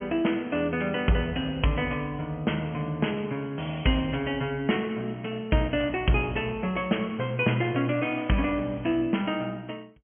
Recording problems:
treble missing; nothing above 3.2 kHz

